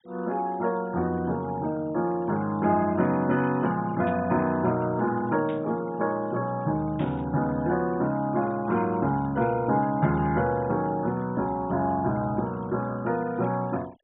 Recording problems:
low-pass filter; nothing above 4 kHz
denoising artefacts; signal-to-artefact ratio 22 dB
burst of static; at 4 s, at 5.5 s and at 7 s; peak -14 dB vs average level

